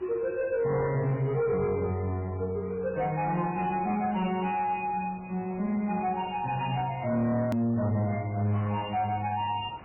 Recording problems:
lossy compression; MP3, log-spectral distance 3 dB, nothing above 2.5 kHz
distorted audio; soft clipping, signal-to-distortion ratio 11 dB
hiss; SNR 21 dB
click at an edit; at 7.5 s

